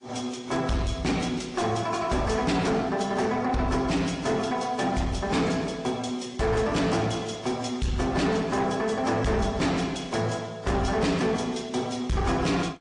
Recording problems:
lossy codec; AAC, then MP3, log-spectral distance 3 dB, nothing above 8.2 kHz
distortion; soft clipping, signal-to-distortion ratio 10 dB

